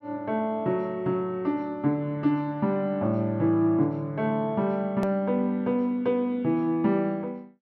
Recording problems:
click at an edit; at 5 s

